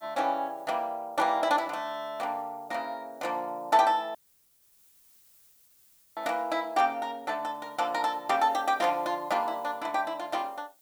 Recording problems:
hiss; SNR 30 dB
audio cutting out; at 4 s for 2 s

